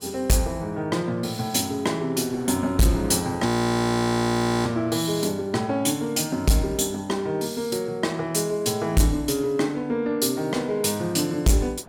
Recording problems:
distortion; hard clipping, signal-to-distortion ratio 10 dB
wind on the microphone; below 960 Hz, SNR 25 dB
frozen audio; at 3.5 s for 1 s

